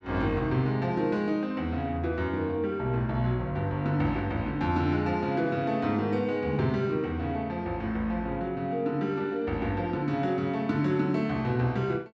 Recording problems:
none

